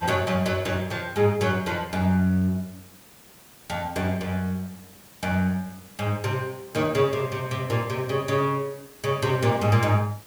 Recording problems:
background hiss; slope -3 dB per octave, SNR 23 dB

